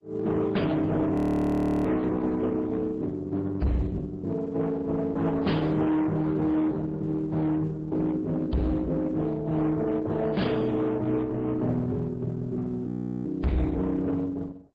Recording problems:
codec artefacts; MP3, then Opus, log-spectral distance 2 dB, nothing above 13.3 kHz
distortion; hard clipping, uneven, signal-to-distortion ratio 6 dB
frozen audio; at 1 s for 0.5 s and at 13 s

